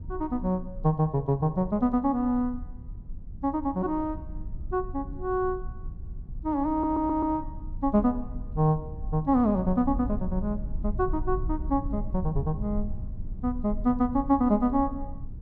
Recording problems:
low-frequency rumble; below 74 Hz, SNR 10 dB
stutter; at 6.5 s

